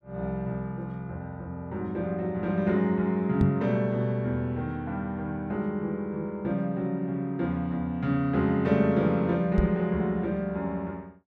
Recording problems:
microphone thump; at 3.5 s and at 9.5 s; peak +7 dB vs average level

